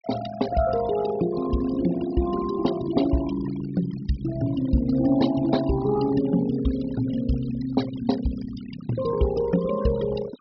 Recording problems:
treble cut off; nothing above 5.5 kHz
denoising artefacts; signal-to-artefact ratio 14 dB

